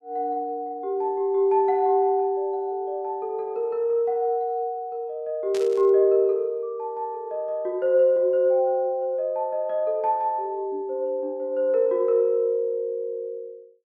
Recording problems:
burst of static; at 5.5 s; peak -10 dB vs average level

